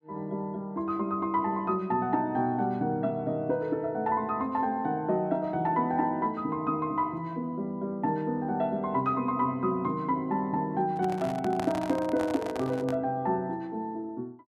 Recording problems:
handling noise; from 11 to 13 s; peak -2 dB vs average level

